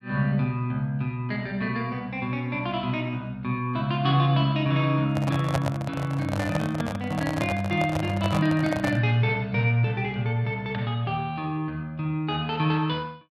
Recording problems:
microphone handling noise; from 5 to 9 s; peak +3 dB vs average level

